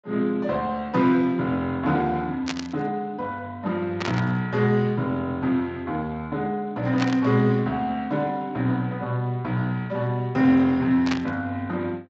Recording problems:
lossy compression; Speex, log-spectral distance 2 dB
burst of static; 4 times, first at 2.5 s; peak 0 dB vs average level

